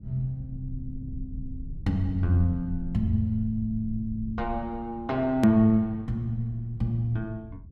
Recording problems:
rumble; below 96 Hz, SNR 13 dB
hard cut with a click; at 5.5 s

